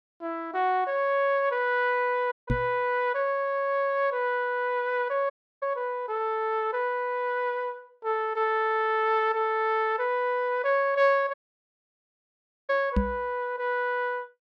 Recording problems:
audio cutting out; at 2.5 s, at 5.5 s and at 11 s for 1.5 s
knock on the microphone; at 2.5 s and at 13 s; peak +5 dB vs average level

